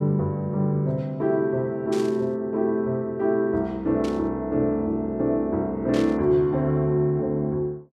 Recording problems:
burst of static; at 2 s, at 4 s and at 6 s; peak -9 dB vs average level

